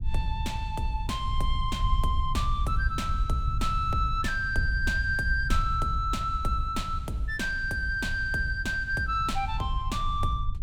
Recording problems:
low-frequency rumble; below 76 Hz, SNR 4 dB

